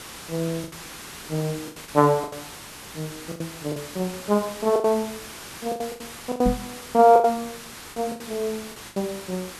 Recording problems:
hiss; slope -1 dB per octave, SNR 13 dB
lost packets; 14% of the sound replaced, filled with the last packet
knock on the microphone; at 6.5 s; peak +3 dB vs average level

